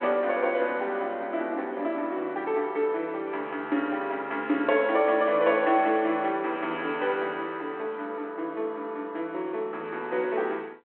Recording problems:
telephone audio; 260 Hz to 3.3 kHz, G.726

